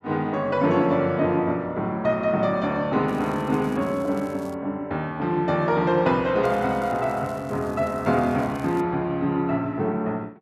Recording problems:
crackle; from 3 to 4.5 s and from 6.5 to 9 s; loose cable, SNR 27 dB

